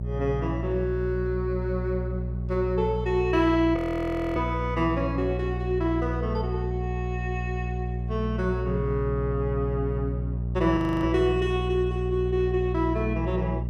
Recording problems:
hum; 60 Hz, harmonics up to 420 Hz, SNR 3 dB
audio freezing; at 4 s for 0.5 s and at 11 s

